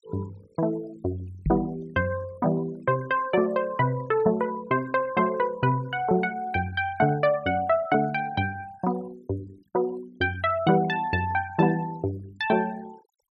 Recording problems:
noise reduction artefacts; signal-to-artefact ratio 23 dB
microphone thump; at 1.5 s; peak +2 dB vs average level

